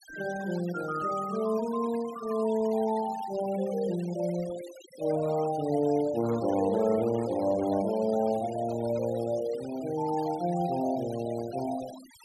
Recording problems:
denoising artefacts; signal-to-artefact ratio 17 dB

